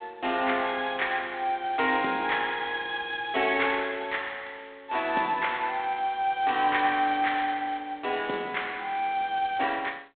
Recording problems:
phone line; 240 Hz to 3.9 kHz, G.726

